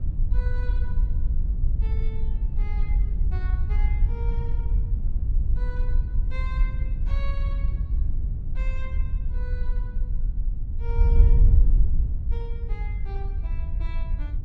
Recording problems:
wind noise; below 60 Hz, SNR -17 dB

